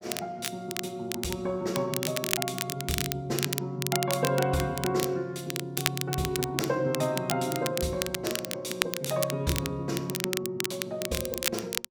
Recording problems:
crackle; vinyl, SNR 2 dB

